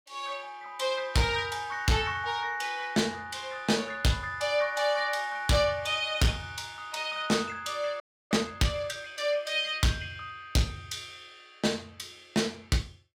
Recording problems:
distortion; hard clipping, signal-to-distortion ratio 11 dB
audio freezing; at 8 s

